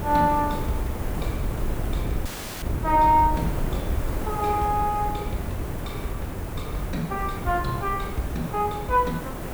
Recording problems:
hiss; slope -7 dB per octave, SNR 9 dB
wind noise; below 130 Hz, SNR 8 dB
dropout; at 2.5 s

